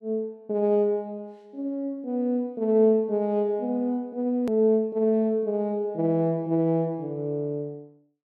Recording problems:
hard cut with a click; at 4.5 s

